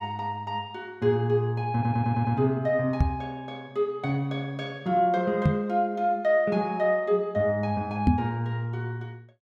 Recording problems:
audio stuttering; at 1.5 s
microphone bump; at 3 s, at 5.5 s and at 8 s; peak +8 dB vs average level

